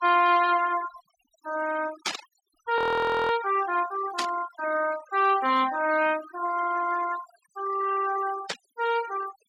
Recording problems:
noise reduction artefacts; signal-to-artefact ratio 15 dB
burst of static; at 2 s, at 4 s and at 8.5 s; peak +2 dB vs average level
audio freezing; at 3 s for 0.5 s

